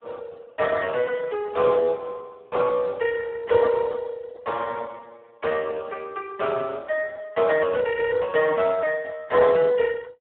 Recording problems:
phone line; 220 Hz to 2.8 kHz, Speex

